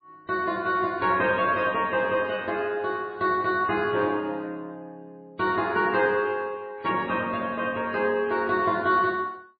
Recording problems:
lossy codec; MP3, log-spectral distance 2 dB, nothing above 4.1 kHz

